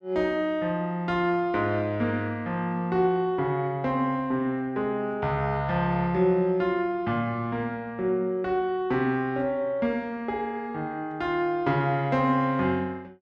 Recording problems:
none

